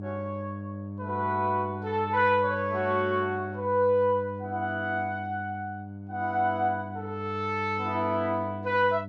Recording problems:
hum; 50 Hz, harmonics up to 700 Hz, SNR 10 dB

